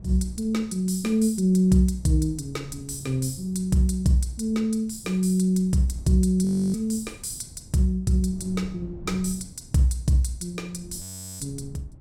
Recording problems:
wind noise; below 170 Hz, SNR 20 dB
frozen audio; at 6.5 s and at 11 s

